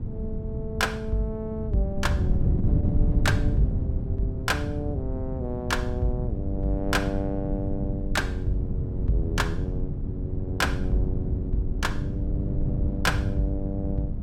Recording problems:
wind noise; below 140 Hz, SNR -1 dB

